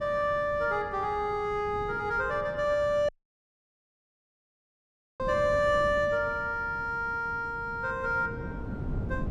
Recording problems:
wind noise; below 240 Hz, SNR 13 dB
dropout; at 3 s for 2 s

